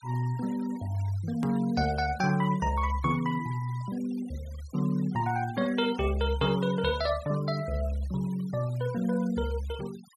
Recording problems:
noise reduction artefacts; signal-to-artefact ratio 20 dB
click at an edit; at 1.5 s

